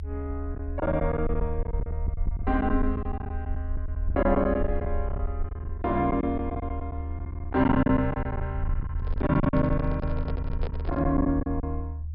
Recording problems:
low-pass filter; nothing above 5.5 kHz
low-frequency rumble; below 78 Hz, SNR 5 dB
packet loss; 14% of the sound replaced, filled with silence
handling noise; from 9 to 11 s; peak -6 dB vs average level

